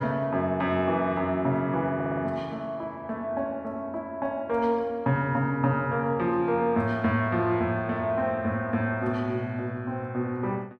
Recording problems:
stutter; at 2 s

